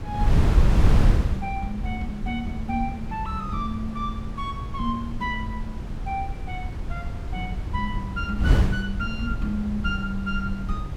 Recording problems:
wind noise; below 120 Hz, SNR -3 dB

